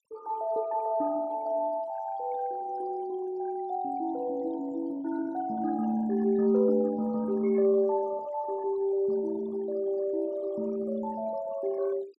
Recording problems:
denoising artefacts; signal-to-artefact ratio 22 dB

